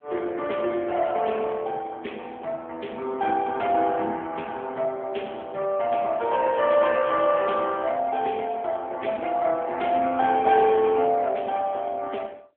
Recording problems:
phone line; 280 Hz to 3.4 kHz, AMR-NB

